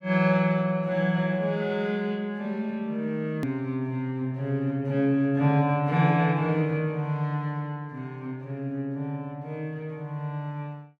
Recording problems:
click at an edit; at 3.5 s

